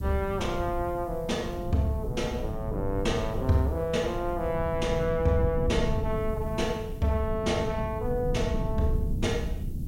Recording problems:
background hiss; SNR 29 dB
low-frequency rumble; below 150 Hz, SNR 5 dB

